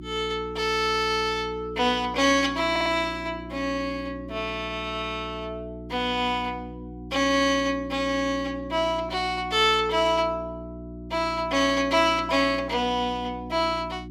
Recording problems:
mains hum; 60 Hz, harmonics up to 360 Hz, SNR 14 dB
stutter; at 2.5 s

